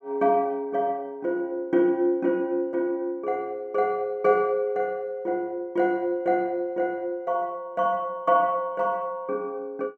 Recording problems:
none

